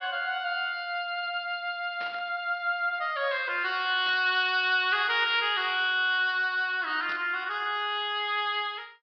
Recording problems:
low-pass filter; nothing above 5.5 kHz
static burst; at 2 s, at 4 s and at 7 s; peak -11 dB vs average level

